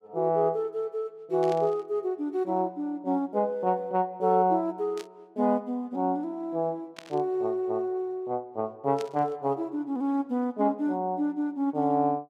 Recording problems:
burst of static; 4 times, first at 1.5 s; peak -9 dB vs average level

